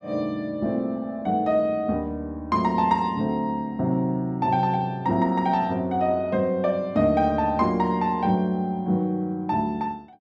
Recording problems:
none

